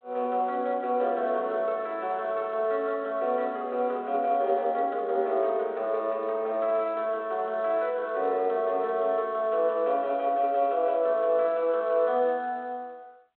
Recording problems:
phone line; 280 Hz to 3.5 kHz, G.726

